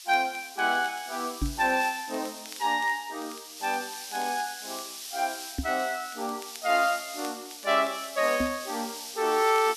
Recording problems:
background hiss; slope +7 dB per octave, SNR 10 dB
crackle; vinyl, SNR 23 dB
microphone bump; at 1.5 s, at 5.5 s and at 8.5 s; peak +3 dB vs average level

